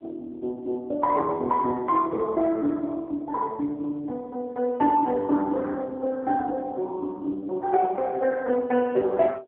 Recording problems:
phone line; 300 Hz to 2.1 kHz, AMR-NB

